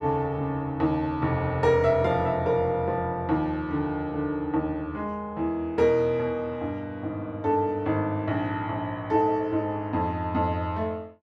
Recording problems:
none

